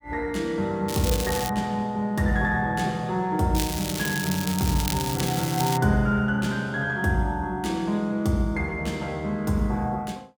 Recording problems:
crackling; at 1 s and from 3.5 to 6 s; loose cable, SNR 6 dB

